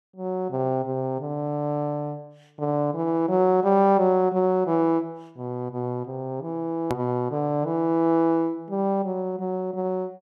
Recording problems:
hard cut with a click; at 7 s

